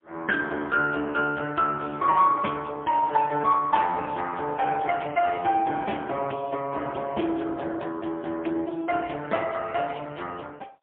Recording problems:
telephone audio; 240 Hz to 3.2 kHz, AMR-NB, then MP3

